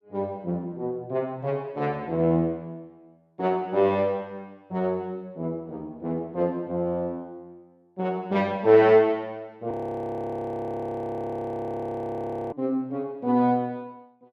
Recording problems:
audio freezing; at 9.5 s for 3 s

